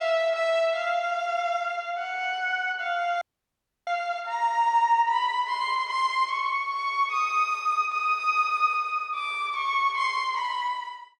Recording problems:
dropout; at 3 s for 0.5 s

